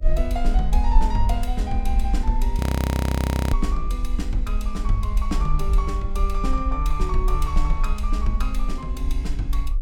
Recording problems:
mains hum; 50 Hz, harmonics up to 600 Hz, SNR 25 dB
low-frequency rumble; below 56 Hz, SNR -5 dB
audio freezing; at 2.5 s for 1 s

